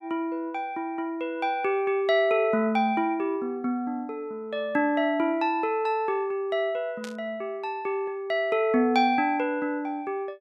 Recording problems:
static burst; at 7 s; peak -10 dB vs average level

